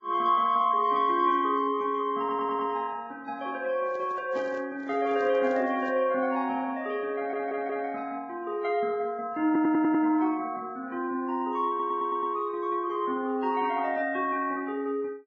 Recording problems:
lossy compression; Vorbis, then AAC, log-spectral distance 2 dB, nothing above 6.2 kHz
audio stuttering; 4 times, first at 2 s
microphone handling noise; from 4 to 6 s; peak -10 dB vs average level

